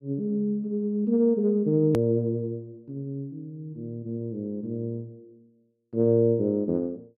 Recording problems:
hard cut with a click; at 2 s

